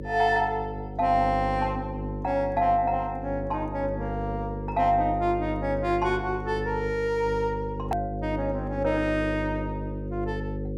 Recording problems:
electrical hum; 50 Hz, harmonics up to 550 Hz, SNR 7 dB
click at an edit; at 8 s

